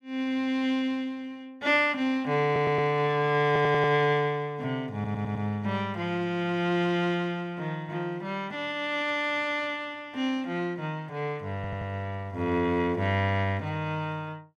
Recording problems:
audio stuttering; 4 times, first at 2.5 s

